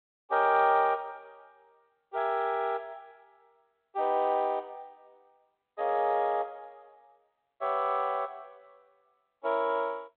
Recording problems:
phone line; 340 Hz to 3.7 kHz, G.726

